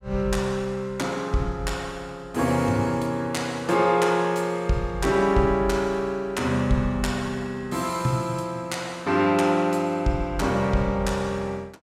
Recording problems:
none

